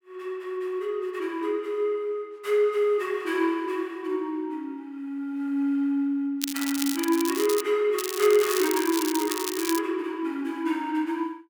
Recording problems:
crackle; from 6.5 to 7.5 s and from 8 to 10 s; loose cable, SNR 6 dB

